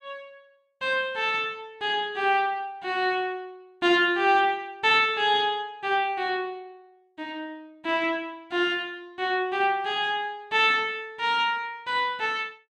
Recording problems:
none

